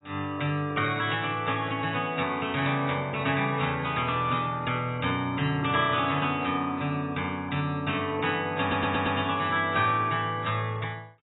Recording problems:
lossy compression; AAC, log-spectral distance 5 dB, nothing above 3.8 kHz
audio stuttering; at 8.5 s

